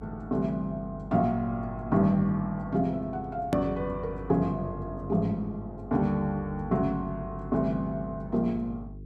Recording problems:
hum; 50 Hz, harmonics up to 450 Hz, SNR 14 dB
edit click; at 3.5 s

